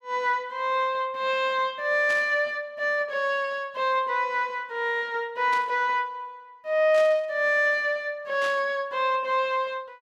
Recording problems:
burst of static; 4 times, first at 2 s; peak -8 dB vs average level

